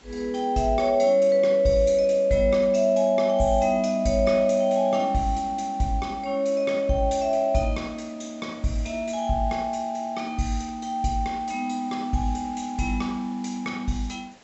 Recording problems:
treble missing; nothing above 7.8 kHz
background hiss; slope -3 dB per octave, SNR 27 dB

